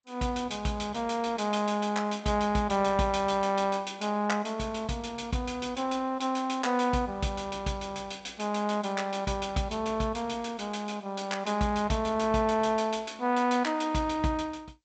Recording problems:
lossy compression; MP2, then G.722, log-spectral distance 4 dB, nothing above 7.8 kHz

